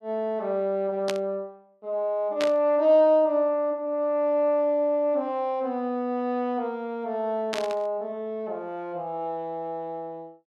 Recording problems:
static burst; at 1 s, at 2.5 s and at 7.5 s; peak -1 dB vs average level

